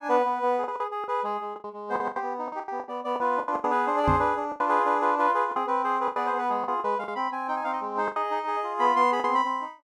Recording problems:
packet loss; 12% of the sound replaced, filled with the last packet
microphone bump; at 4 s; peak +3 dB vs average level

